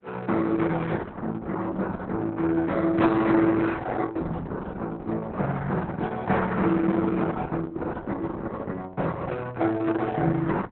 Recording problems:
lossy compression; Opus, log-spectral distance 3 dB, nothing above 4 kHz

